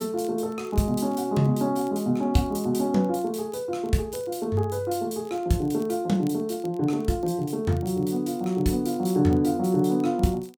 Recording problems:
crackle; vinyl, SNR 30 dB

